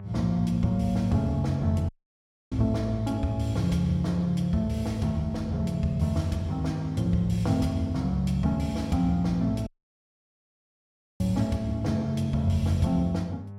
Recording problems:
hum; 50 Hz, harmonics up to 1.1 kHz, SNR 13 dB
dropout; at 2 s for 0.5 s and at 9.5 s for 1.5 s

